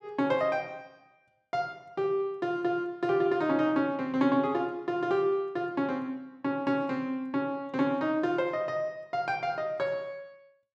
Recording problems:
none

